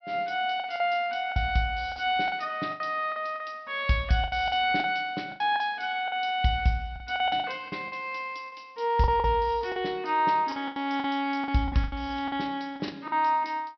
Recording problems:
treble cut off; nothing above 5.5 kHz
packet loss; 11% of the sound replaced, filled with the last packet

